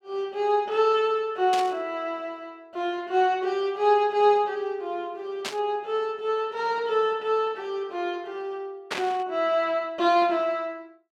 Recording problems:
burst of static; at 1.5 s, at 5.5 s and at 9 s; peak 0 dB vs average level

